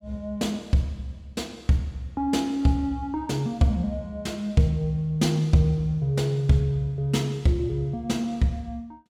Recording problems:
none

